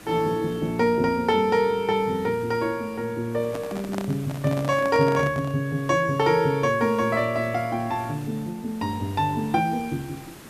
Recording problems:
background hiss; slope -4 dB per octave, SNR 21 dB
microphone handling noise; from 3.5 to 5.5 s; peak -4 dB vs average level

